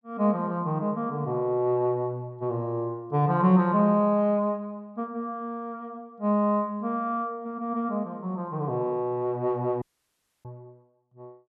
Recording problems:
dropout; at 10 s for 0.5 s

